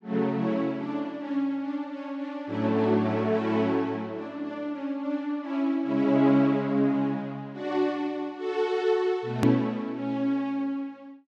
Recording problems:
edit click; at 9.5 s

